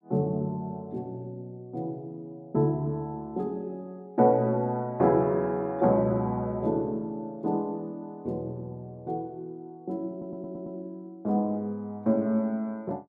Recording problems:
audio stuttering; at 10 s

